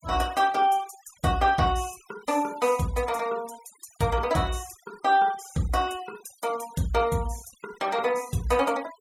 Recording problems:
noise reduction artefacts; signal-to-artefact ratio 21 dB

